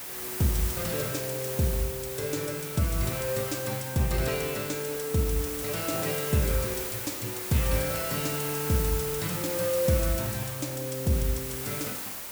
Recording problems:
hiss; slope -1 dB per octave, SNR 3 dB

